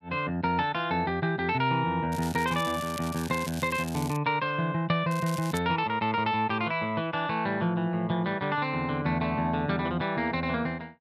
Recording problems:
crackle; from 2 to 4 s and at 5 s; loose cable, SNR 14 dB

